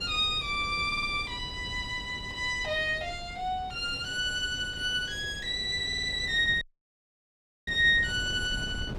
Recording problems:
wind on the microphone; below 220 Hz, SNR 16 dB
audio stuttering; at 1 s and at 6 s
audio cutting out; at 6.5 s for 1 s

